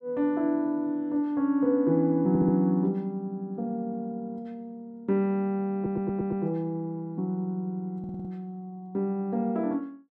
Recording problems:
stutter; at 2.5 s, at 6 s and at 8 s

